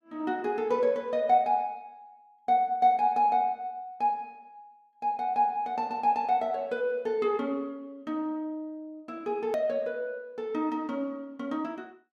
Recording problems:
hard cut with a click; at 9.5 s

